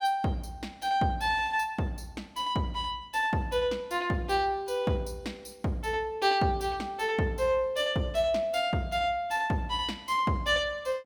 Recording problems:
none

